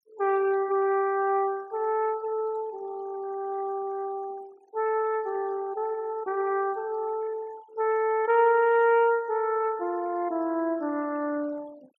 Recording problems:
noise reduction artefacts; signal-to-artefact ratio 25 dB

